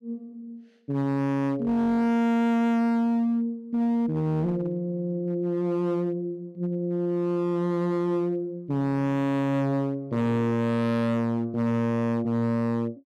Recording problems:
distorted audio; hard clipping, signal-to-distortion ratio 6 dB

